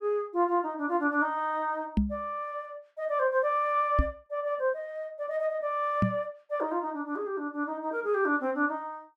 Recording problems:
microphone bump; at 2 s, at 4 s and at 6 s; peak +7 dB vs average level

